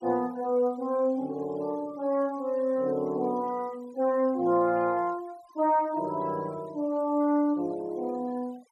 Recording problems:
noise reduction artefacts; signal-to-artefact ratio 26 dB

